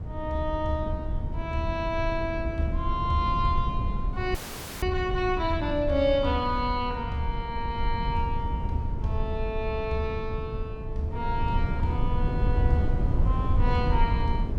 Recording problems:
rumble; below 100 Hz, SNR 1 dB
audio freezing; at 4.5 s

